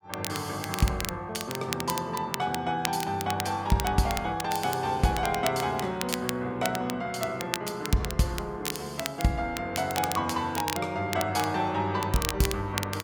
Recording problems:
crackle; vinyl, SNR 7 dB

